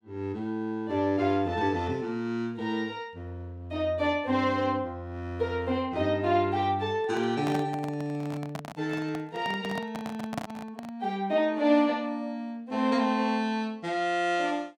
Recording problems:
microphone handling noise; from 7 to 11 s; peak 0 dB vs average level

